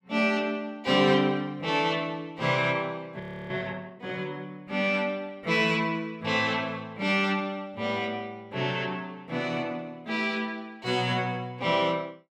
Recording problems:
frozen audio; at 3 s

